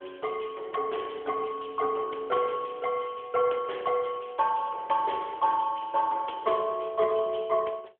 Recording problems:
phone line; 340 Hz to 3.3 kHz, AMR-NB

